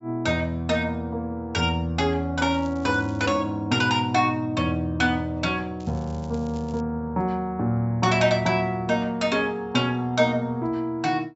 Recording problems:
treble cut off; nothing above 8 kHz
crackle; at 2.5 s and from 6 to 7 s; loose cable, SNR 27 dB

